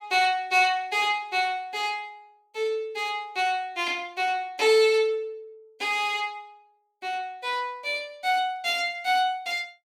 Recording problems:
none

